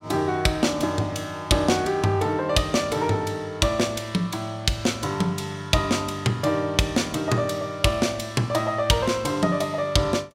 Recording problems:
none

